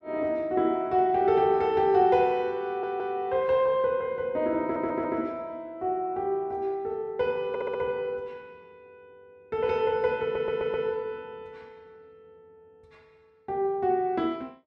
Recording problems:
stutter; 4 times, first at 2.5 s

